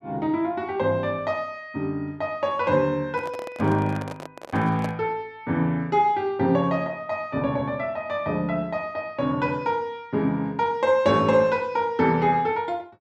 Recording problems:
microphone handling noise; from 3 to 5 s; peak -4 dB vs average level

